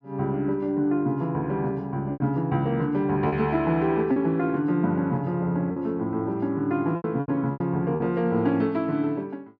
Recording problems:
lost packets; 5% of the sound replaced, filled with repeated pitch periods

